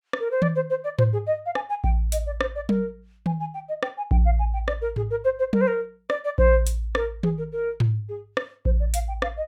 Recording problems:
none

